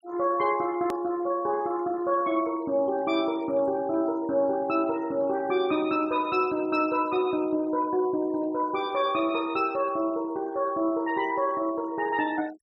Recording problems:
denoising artefacts; signal-to-artefact ratio 23 dB
hard cut with a click; at 1 s

